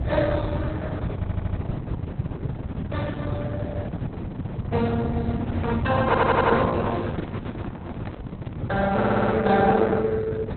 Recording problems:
lossy codec; Opus, log-spectral distance 3 dB, nothing above 4 kHz
low-frequency rumble; below 200 Hz, SNR 5 dB
audio stuttering; at 1 s, at 6 s and at 9 s
microphone handling noise; from 6.5 to 8.5 s; peak -6 dB vs average level

